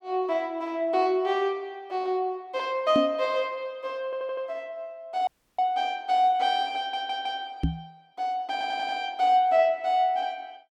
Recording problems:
microphone bump; at 3 s and at 7.5 s; peak +4 dB vs average level
stutter; at 4 s, at 7 s and at 8.5 s
audio cutting out; at 5.5 s

